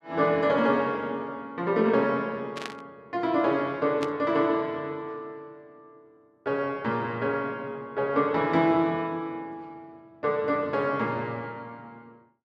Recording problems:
static burst; at 2.5 s and at 4 s; peak -4 dB vs average level

